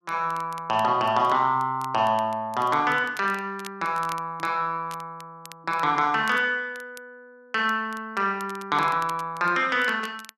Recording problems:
crackling; vinyl, SNR 23 dB

